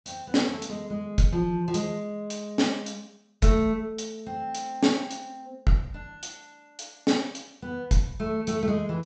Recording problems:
treble cut off; nothing above 8 kHz

